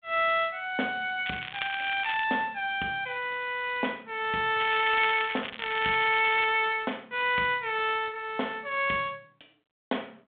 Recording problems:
phone line; 220 Hz to 3.9 kHz, G.726
crackle; at 1.5 s and from 4.5 to 6.5 s; loose cable, SNR 10 dB

